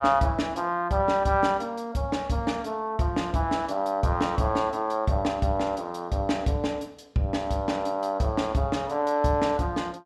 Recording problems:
none

